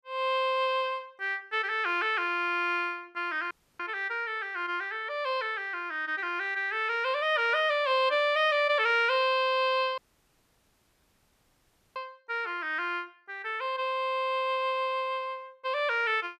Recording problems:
audio cutting out; at 3.5 s and at 10 s for 2 s

